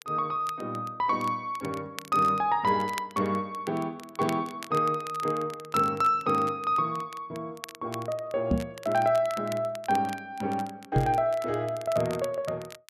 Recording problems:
crackling; vinyl, SNR 18 dB
knock on the microphone; at 8.5 s and at 11 s; peak +6 dB vs average level

